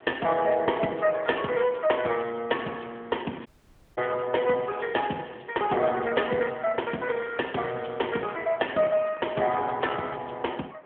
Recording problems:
phone line; 240 Hz to 3.3 kHz, AMR-NB
wind noise; below 1.3 kHz, SNR 23 dB
dropout; at 3.5 s for 0.5 s

